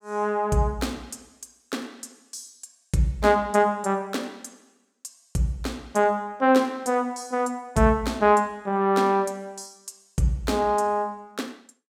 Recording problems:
none

